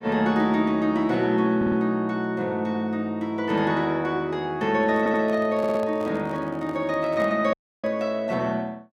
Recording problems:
audio stuttering; at 1.5 s, at 5 s and at 5.5 s
handling noise; from 4.5 to 8 s; peak -10 dB vs average level
audio cutting out; at 7.5 s

